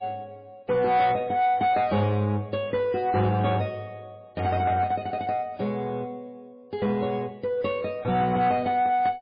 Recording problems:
lossy compression; MP3, log-spectral distance 2 dB
distortion; soft clipping, signal-to-distortion ratio 11 dB

